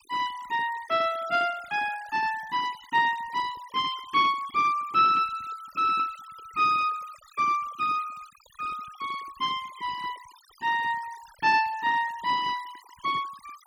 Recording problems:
denoising artefacts; signal-to-artefact ratio 19 dB

